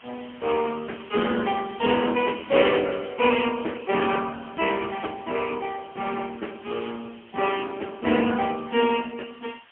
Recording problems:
phone line; 220 Hz to 3.2 kHz, AMR-NB, then MP3
hiss; SNR 25 dB

